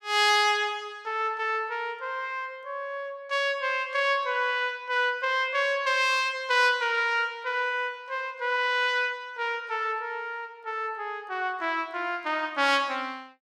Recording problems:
none

